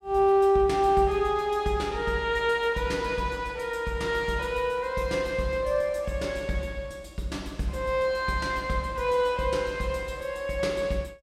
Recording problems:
none

